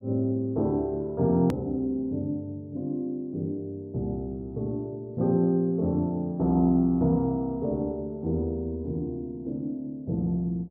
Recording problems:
click at an edit; at 1.5 s

